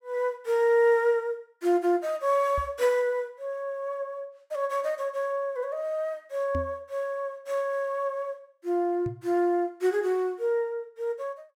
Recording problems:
microphone thump; at 2.5 s, at 6.5 s and at 9 s; peak -2 dB vs average level

